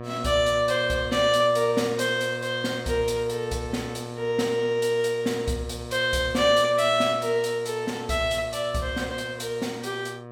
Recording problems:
hum; 60 Hz, harmonics up to 1.9 kHz, SNR 13 dB

